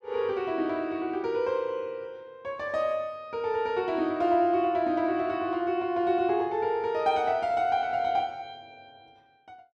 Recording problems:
none

